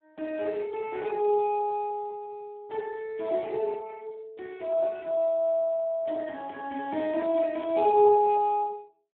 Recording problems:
phone line; 220 Hz to 2.5 kHz, Speex

